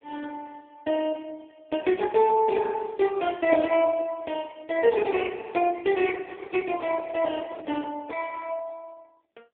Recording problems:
telephone audio; 280 Hz to 3.1 kHz, AMR-NB
handling noise; from 6 to 8 s; peak -10 dB vs average level

